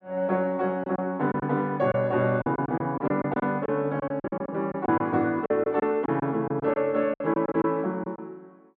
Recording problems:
lost packets; 11% of the sound replaced, filled with silence

